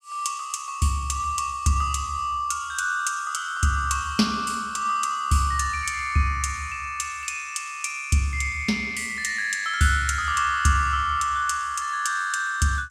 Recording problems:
none

